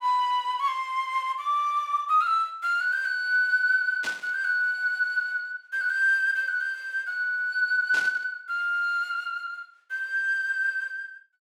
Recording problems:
static burst; at 4 s and at 8 s; peak -6 dB vs average level

